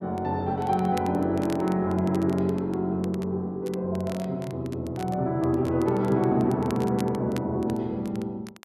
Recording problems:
crackle; vinyl, SNR 22 dB

